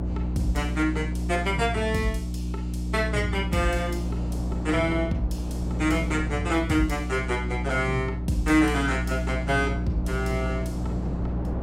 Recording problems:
electrical hum; 60 Hz, harmonics up to 360 Hz, SNR 3 dB
wind noise; below 540 Hz, SNR 14 dB

